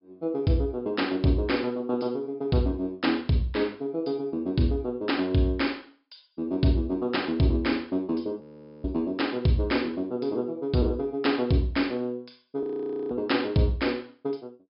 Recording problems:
treble missing; nothing above 5.5 kHz
audio freezing; at 8.5 s and at 13 s

